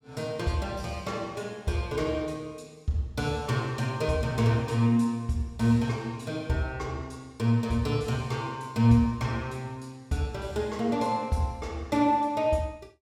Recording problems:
none

